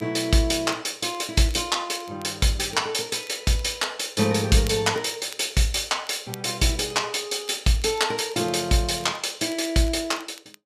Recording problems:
crackling; vinyl, SNR 24 dB

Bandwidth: 14.5 kHz